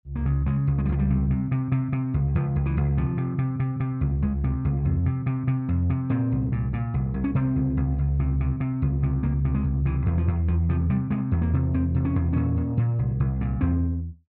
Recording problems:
none

